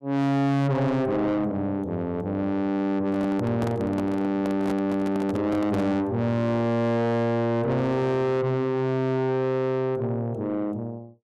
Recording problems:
distorted audio; soft clipping, signal-to-distortion ratio 6 dB
handling noise; from 3 to 6 s; peak -2 dB vs average level

